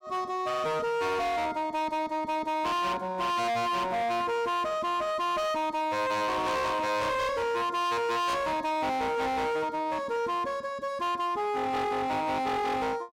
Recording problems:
distortion; hard clipping, signal-to-distortion ratio 7 dB

